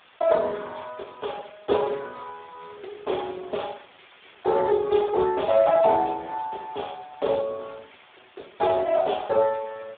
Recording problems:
telephone audio; 300 Hz to 2.6 kHz, Speex
background hiss; SNR 27 dB

